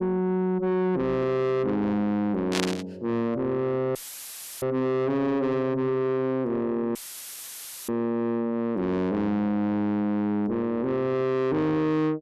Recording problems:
distortion; soft clipping, signal-to-distortion ratio 7 dB
static burst; at 2.5 s; peak +1 dB vs average level
dropout; at 4 s for 0.5 s and at 7 s for 1 s; filled with static

